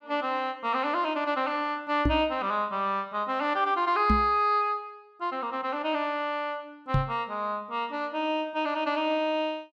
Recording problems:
microphone bump; at 2 s, at 4 s and at 7 s; peak +6 dB vs average level

